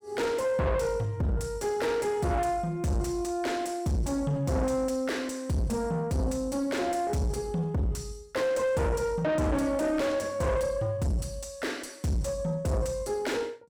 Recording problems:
distortion; soft clipping, signal-to-distortion ratio 7 dB

